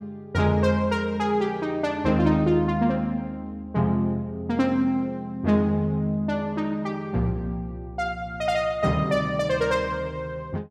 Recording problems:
none

